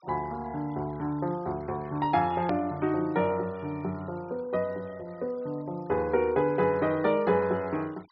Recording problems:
low-pass filter; nothing above 5.5 kHz
denoising artefacts; signal-to-artefact ratio 26 dB
hard cut with a click; at 2.5 s

